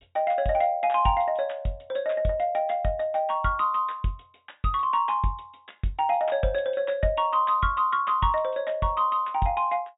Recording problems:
treble cut off; nothing above 4 kHz

